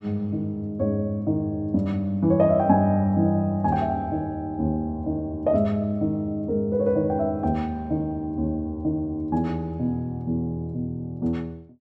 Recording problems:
none

